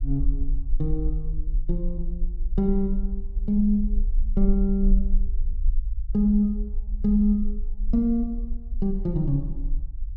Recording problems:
rumble; below 42 Hz, strongest tone 26 Hz, SNR 4 dB

